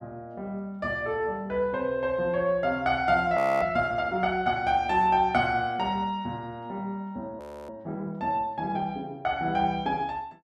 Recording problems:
frozen audio; at 3.5 s and at 7.5 s

